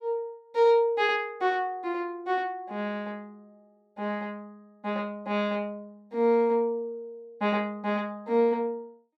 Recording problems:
none

